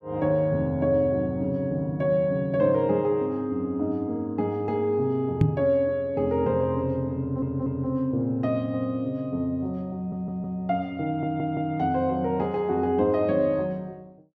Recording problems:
knock on the microphone; at 5.5 s; peak +9 dB vs average level
stutter; at 7 s, at 10 s and at 11 s

